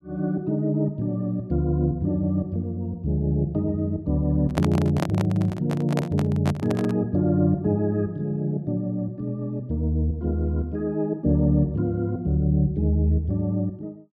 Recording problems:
microphone handling noise; from 4.5 to 7 s; peak +1 dB vs average level

